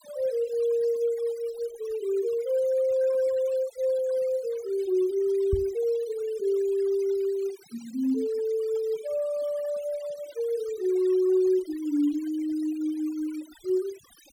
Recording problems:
denoising artefacts; signal-to-artefact ratio 23 dB
knock on the microphone; at 5.5 s; peak +3 dB vs average level

